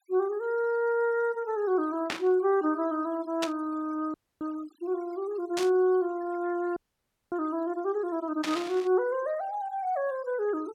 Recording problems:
denoising artefacts; signal-to-artefact ratio 25 dB
burst of static; 4 times, first at 2 s; peak +1 dB vs average level
audio freezing; at 4 s and at 7 s for 0.5 s

